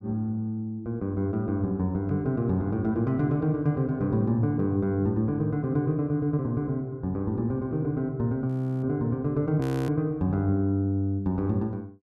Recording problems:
frozen audio; at 8.5 s and at 9.5 s

